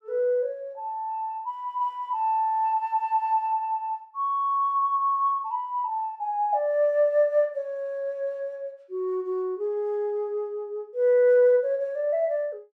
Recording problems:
none

